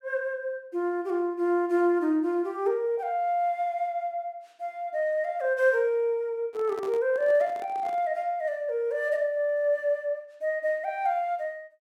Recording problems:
microphone handling noise; from 6.5 to 8 s; peak -10 dB vs average level

